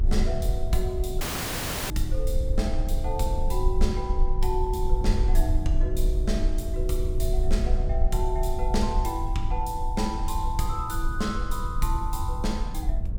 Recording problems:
rumble; below 54 Hz, SNR -2 dB
audio cutting out; at 1 s for 0.5 s

